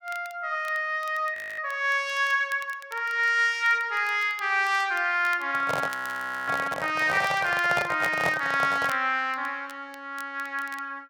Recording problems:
crackling; vinyl, SNR 24 dB
frozen audio; at 1.5 s and at 6 s for 0.5 s
microphone handling noise; from 5.5 to 9 s; peak +1 dB vs average level

